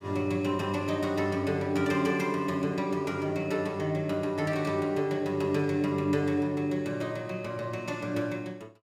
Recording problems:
none

